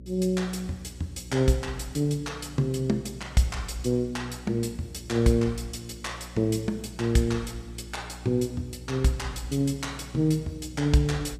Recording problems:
electrical hum; 60 Hz, harmonics up to 540 Hz, SNR 16 dB

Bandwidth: 15.5 kHz